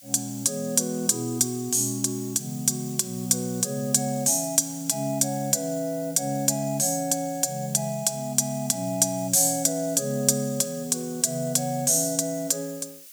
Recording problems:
hiss; slope +6 dB per octave, SNR 19 dB

